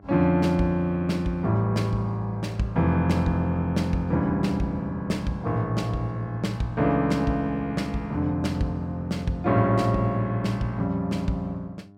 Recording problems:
hum; 50 Hz, harmonics up to 1.1 kHz, SNR 24 dB

